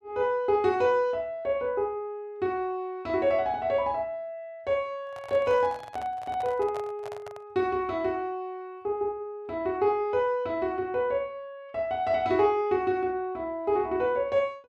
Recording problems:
handling noise; from 5 to 7.5 s; peak -8 dB vs average level

